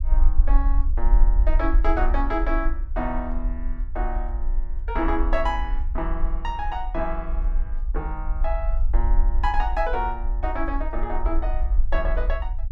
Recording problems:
rumble; below 42 Hz, SNR -3 dB

